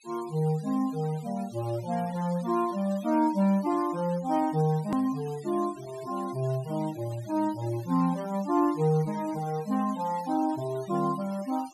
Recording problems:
noise reduction artefacts; signal-to-artefact ratio 21 dB
click at an edit; at 5 s

